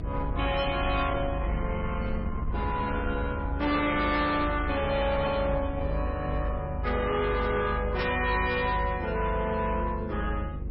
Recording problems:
lossy compression; MP3, log-spectral distance 3 dB, nothing above 4.8 kHz
distortion; soft clipping, signal-to-distortion ratio 10 dB
electrical hum; 50 Hz, harmonics up to 550 Hz, SNR 9 dB
low-frequency rumble; below 110 Hz, SNR 6 dB
static burst; at 8 s; peak -2 dB vs average level

